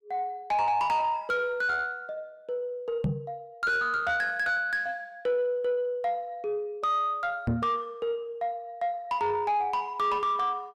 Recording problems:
distorted audio; soft clipping, signal-to-distortion ratio 10 dB
microphone thump; at 3 s and at 7.5 s; peak +4 dB vs average level

